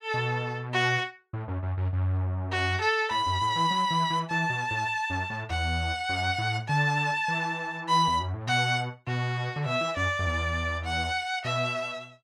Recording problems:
none

